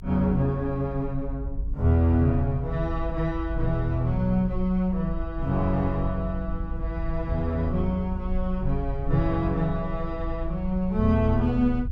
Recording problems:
rumble; below 54 Hz, SNR 8 dB

